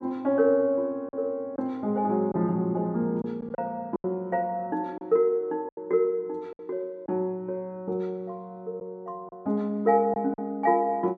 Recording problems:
packet loss; 5% of the sound replaced, filled with silence

